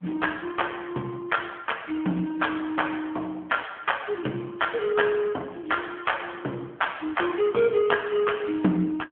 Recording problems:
phone line; 190 Hz to 3.3 kHz, AMR-NB

